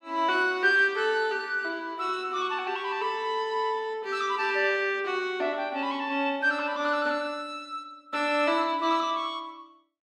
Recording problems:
none

